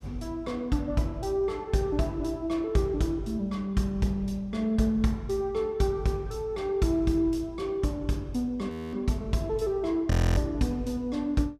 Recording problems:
audio freezing; at 8.5 s and at 10 s

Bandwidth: 14.5 kHz